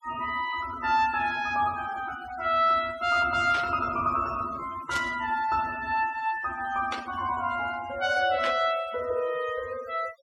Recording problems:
noise reduction artefacts; signal-to-artefact ratio 18 dB
static burst; 4 times, first at 3.5 s; peak -3 dB vs average level

